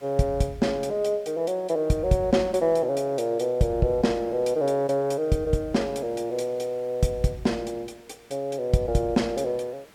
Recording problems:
background hiss; SNR 29 dB

